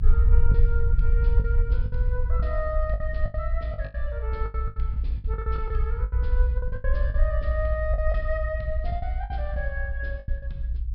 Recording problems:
treble cut off; nothing above 5.5 kHz
rumble; below 60 Hz, SNR -7 dB
packet loss; 13% of the sound replaced, filled with the last packet

